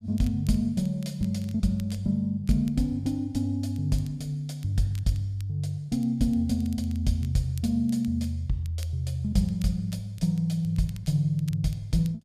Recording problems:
crackling; vinyl, SNR 26 dB

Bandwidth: 14.5 kHz